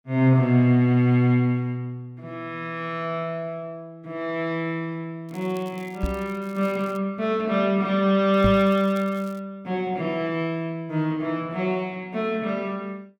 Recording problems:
crackling; from 5.5 to 7 s and from 8.5 to 9.5 s; loose cable, SNR 27 dB
knock on the microphone; at 6 s and at 8.5 s; peak +3 dB vs average level

